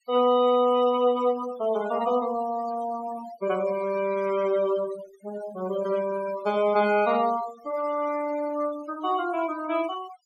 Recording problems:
denoising artefacts; signal-to-artefact ratio 17 dB

